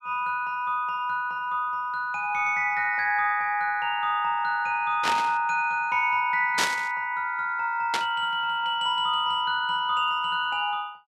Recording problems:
static burst; at 5 s, at 6.5 s and at 8 s; peak +4 dB vs average level

